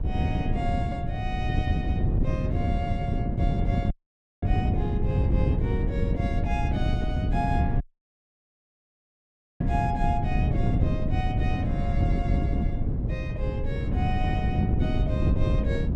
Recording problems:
wind noise; below 160 Hz, SNR -7 dB
dropout; at 4 s for 0.5 s and at 8 s for 2 s

